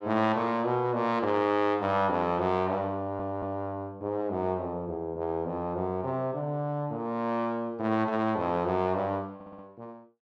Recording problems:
audio stuttering; at 3 s and at 9.5 s

